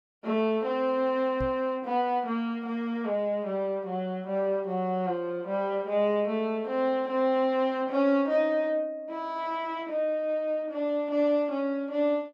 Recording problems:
knock on the microphone; at 1.5 s; peak -4 dB vs average level

